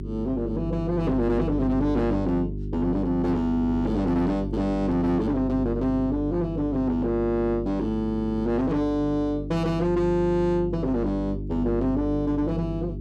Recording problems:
distorted audio; soft clipping, signal-to-distortion ratio 10 dB
mains hum; 50 Hz, harmonics up to 400 Hz, SNR 8 dB

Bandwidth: 12.5 kHz